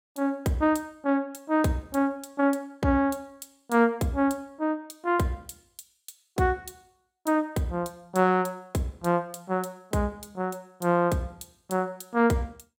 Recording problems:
none

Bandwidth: 16.5 kHz